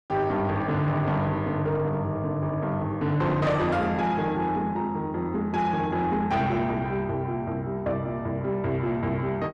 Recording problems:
distorted audio; soft clipping, signal-to-distortion ratio 10 dB

